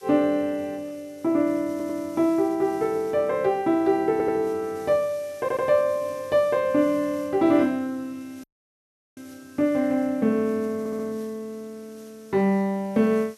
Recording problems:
background hiss; slope +2 dB per octave, SNR 27 dB
stutter; 4 times, first at 1.5 s
audio cutting out; at 8.5 s for 0.5 s

